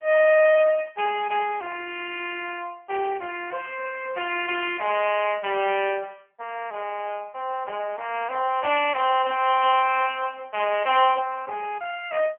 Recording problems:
phone line; 300 Hz to 3.1 kHz, AMR-NB

